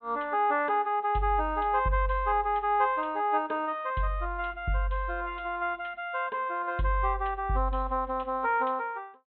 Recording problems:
treble cut off; nothing above 4 kHz

